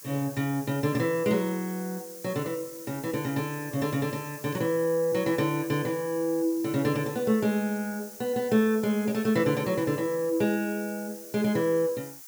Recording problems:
hiss; SNR 15 dB

